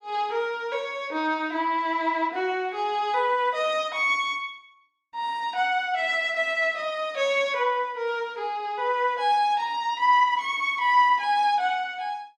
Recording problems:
none

